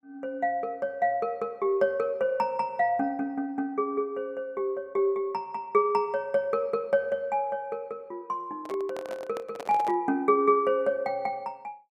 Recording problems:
handling noise; from 8.5 to 10 s; peak -6 dB vs average level

